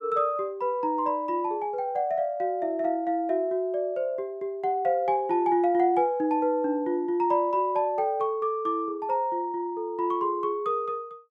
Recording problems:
none

